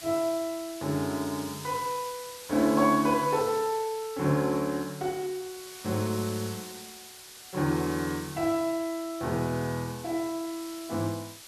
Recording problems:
hiss; slope +1 dB per octave, SNR 13 dB

